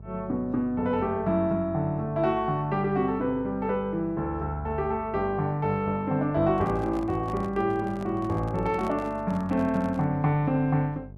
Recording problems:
mains hum; 50 Hz, harmonics up to 650 Hz, SNR 18 dB
handling noise; from 6.5 to 10 s; peak -8 dB vs average level

